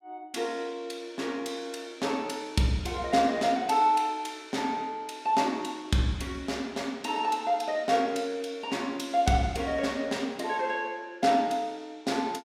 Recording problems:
none

